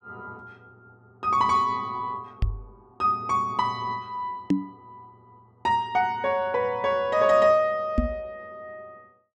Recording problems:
knock on the microphone; at 2.5 s, at 4.5 s and at 8 s; peak +6 dB vs average level

